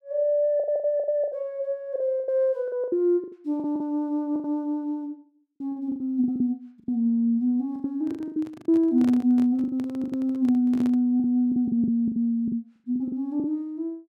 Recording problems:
packet loss; 15% of the sound replaced, filled with the last packet
handling noise; from 8 to 11 s; peak -6 dB vs average level

